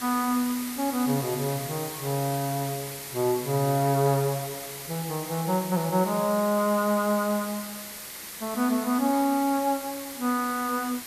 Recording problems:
background hiss; slope 0 dB per octave, SNR 9 dB

